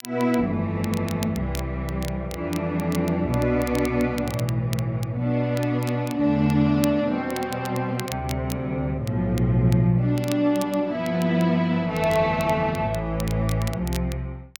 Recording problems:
crackling; vinyl, SNR 17 dB

